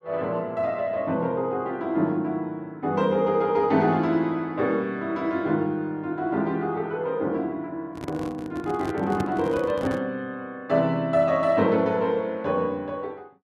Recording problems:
handling noise; from 8 to 10 s; peak -1 dB vs average level

